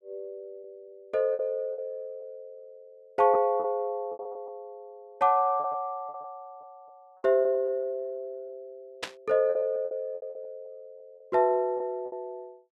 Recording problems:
packet loss; 9% of the sound replaced, filled with repeated pitch periods
static burst; at 9 s; peak 0 dB vs average level

